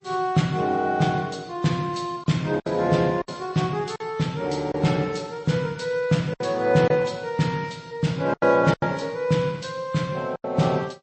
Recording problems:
lossy codec; MP3, then MP3, log-spectral distance 2 dB, nothing above 8.2 kHz
packet loss; 5% of the sound replaced, filled with silence

